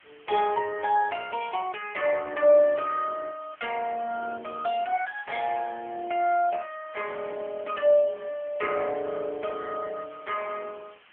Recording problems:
phone line; 260 Hz to 3.3 kHz, AMR-NB
background hiss; SNR 27 dB
crackle; at 1.5 s and at 5 s; loose cable, SNR 27 dB

